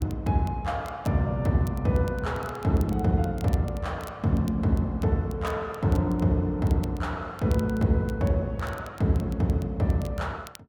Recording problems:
crackling; vinyl, SNR 25 dB

